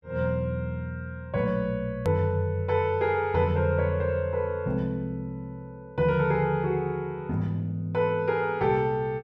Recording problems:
hard cut with a click; at 2 s

